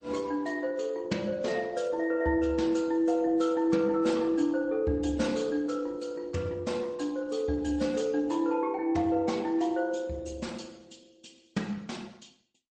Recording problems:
lossy codec; MP3, then Opus, log-spectral distance 4 dB, nothing above 8.2 kHz

